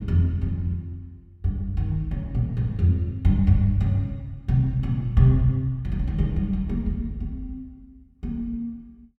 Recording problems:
none

